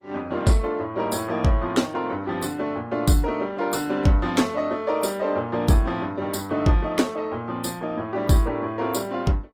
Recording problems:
codec artefacts; Opus, log-spectral distance 3 dB

